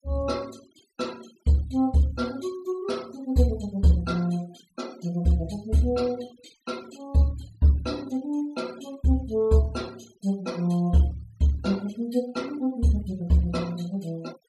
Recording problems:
denoising artefacts; signal-to-artefact ratio 23 dB

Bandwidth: 14.5 kHz